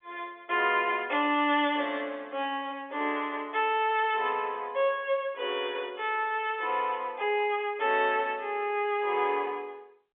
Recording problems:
telephone audio; 300 Hz to 3.7 kHz, G.711

